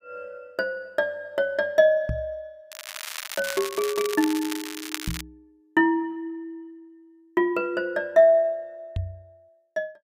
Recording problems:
microphone thump; at 2 s, at 5 s and at 9 s; peak -1 dB vs average level
crackling; from 2.5 to 5 s; loose cable, SNR 9 dB

